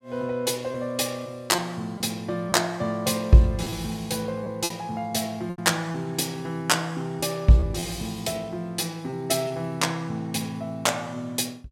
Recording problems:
packet loss; 3% of the sound replaced, filled with repeated pitch periods

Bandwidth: 16.5 kHz